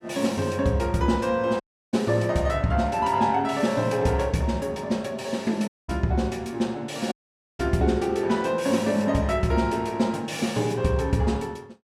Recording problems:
dropout; at 1.5 s, at 5.5 s and at 7 s

